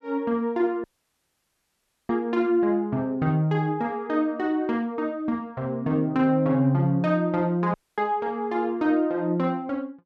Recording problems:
audio cutting out; at 1 s for 1.5 s and at 7.5 s

